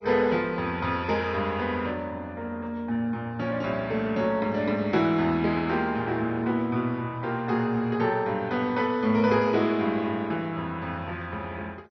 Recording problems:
lossy compression; MP2, log-spectral distance 2 dB, nothing above 5.7 kHz

